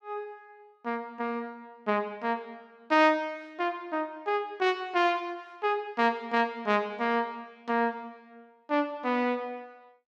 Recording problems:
none

